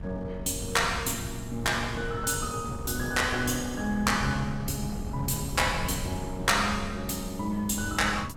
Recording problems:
wind noise; below 180 Hz, SNR 9 dB

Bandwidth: 17 kHz